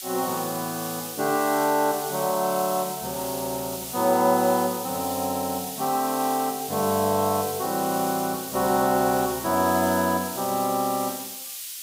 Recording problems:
background hiss; SNR 8 dB

